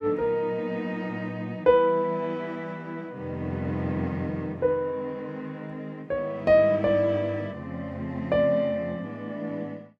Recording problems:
none

